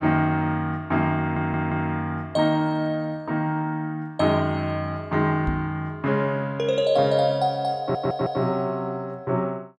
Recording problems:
audio stuttering; at 1 s and at 8 s
microphone bump; at 5.5 s; peak -1 dB vs average level

